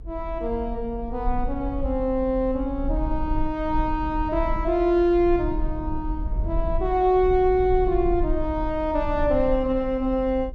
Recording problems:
rumble; below 52 Hz, SNR 8 dB

